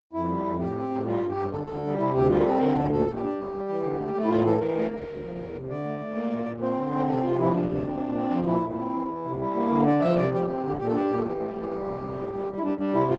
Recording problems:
lossy compression; Opus, log-spectral distance 3 dB, nothing above 7.6 kHz

